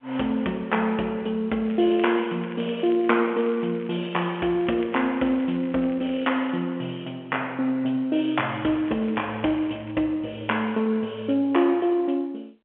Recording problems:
telephone audio; 260 Hz to 3.3 kHz, G.711
crackling; from 1.5 to 6.5 s and from 8.5 to 10 s; loose cable, SNR 22 dB

